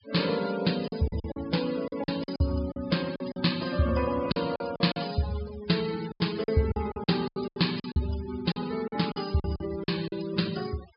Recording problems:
low-pass filter; nothing above 5.5 kHz
denoising artefacts; signal-to-artefact ratio 15 dB
packet loss; 13% of the sound replaced, filled with silence

